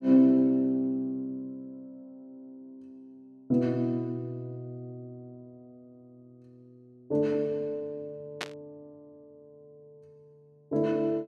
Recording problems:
burst of static; at 8.5 s; peak 0 dB vs average level

